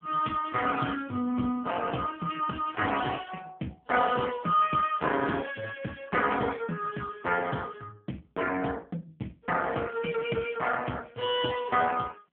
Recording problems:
telephone audio; 150 Hz to 3.4 kHz, AMR-NB

